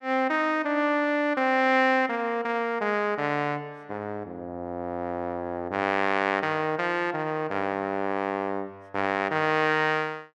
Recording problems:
none

